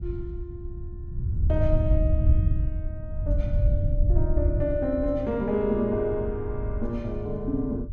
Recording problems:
low-frequency rumble; below 92 Hz, SNR -1 dB

